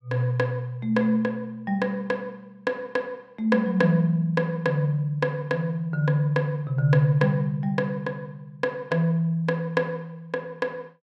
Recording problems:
none

